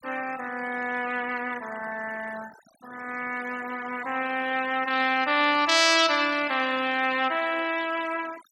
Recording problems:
denoising artefacts; signal-to-artefact ratio 16 dB

